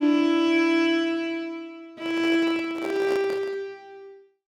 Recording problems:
microphone handling noise; from 2 to 3.5 s; peak -6 dB vs average level

